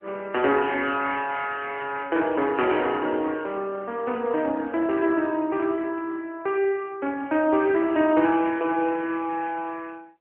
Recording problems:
telephone audio; 240 Hz to 3.2 kHz, AMR-NB

